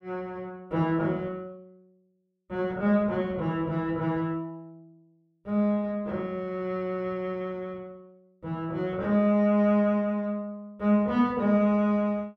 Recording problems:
none

